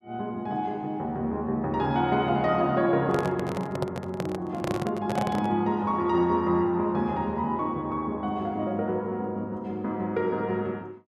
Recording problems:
microphone handling noise; from 3 to 5.5 s; peak +2 dB vs average level

